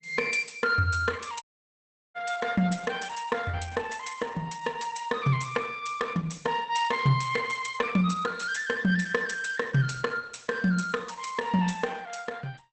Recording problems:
codec artefacts; Opus, log-spectral distance 6 dB, nothing above 8.2 kHz
dropout; at 1.5 s for 0.5 s

